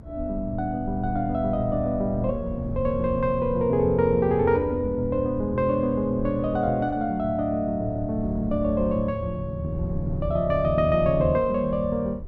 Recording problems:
rumble; below 110 Hz, SNR 13 dB

